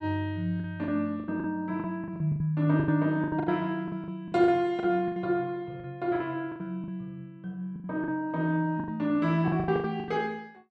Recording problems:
lost packets; 15% of the sound replaced, filled with the last packet

